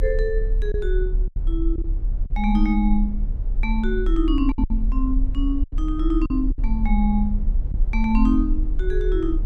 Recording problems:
low-frequency rumble; below 38 Hz, strongest tone 34 Hz, SNR 1 dB
lost packets; 5% of the sound replaced, filled with silence

